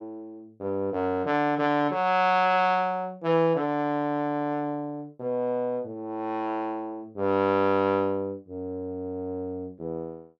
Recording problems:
none

